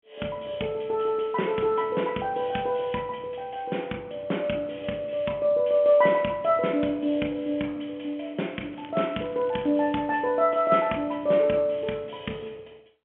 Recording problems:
telephone audio; 150 Hz to 3.4 kHz, G.711
crackling; from 8.5 to 10 s; loose cable, SNR 27 dB

